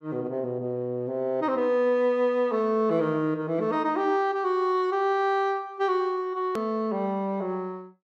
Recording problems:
edit click; at 6.5 s

